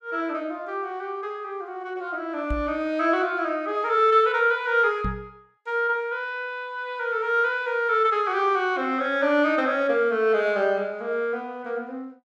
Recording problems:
microphone thump; at 2.5 s and at 5 s; peak -2 dB vs average level

